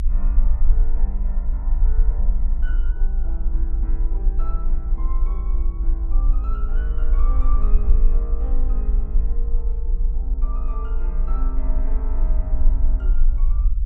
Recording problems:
low-frequency rumble; below 42 Hz, strongest tone 24 Hz, SNR -16 dB

